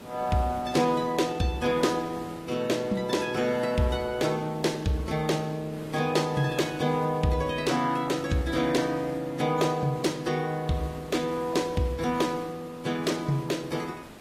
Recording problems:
lossy compression; AAC, log-spectral distance 3 dB, nothing above 14.7 kHz
hiss; slope -6 dB per octave, SNR 16 dB

